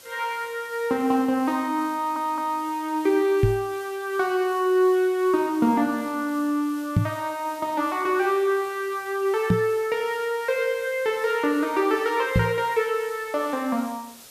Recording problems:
background hiss; SNR 21 dB
stutter; at 2 s
microphone thump; 4 times, first at 3.5 s; peak +7 dB vs average level

